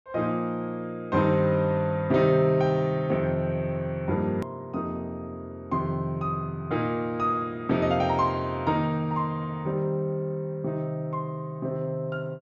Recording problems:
low-pass filter; nothing above 8 kHz
click at an edit; at 4.5 s

